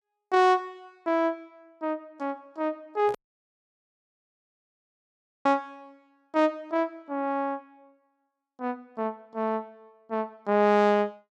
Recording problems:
microphone handling noise; at 3 s; peak -9 dB vs average level
audio cutting out; at 3 s for 2.5 s

